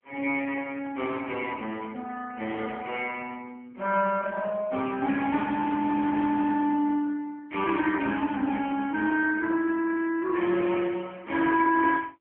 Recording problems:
telephone audio; 240 Hz to 3.5 kHz, AMR-NB

